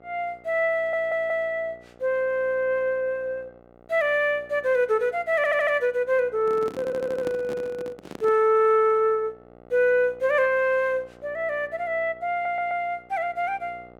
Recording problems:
hum; 60 Hz, harmonics up to 2.1 kHz, SNR 26 dB
audio stuttering; 4 times, first at 1 s
handling noise; from 6.5 to 8.5 s; peak -6 dB vs average level

